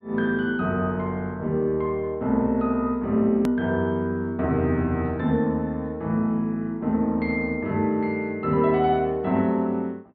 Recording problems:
treble missing; nothing above 4.7 kHz
click at an edit; at 3.5 s

